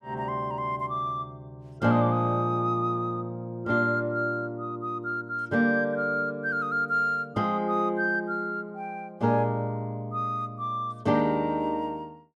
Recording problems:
none

